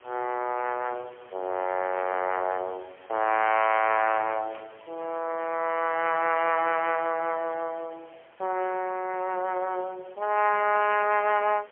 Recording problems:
telephone audio; 320 Hz to 3.1 kHz, AMR-NB, then MP3
background hiss; SNR 27 dB
static burst; at 4.5 s; peak -18 dB vs average level

